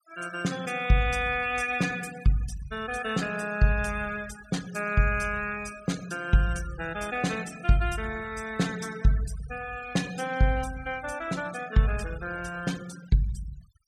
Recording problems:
noise reduction artefacts; signal-to-artefact ratio 17 dB

